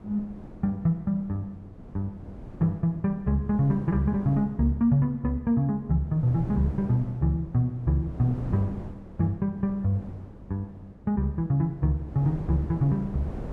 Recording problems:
wind noise; below 310 Hz, SNR 15 dB

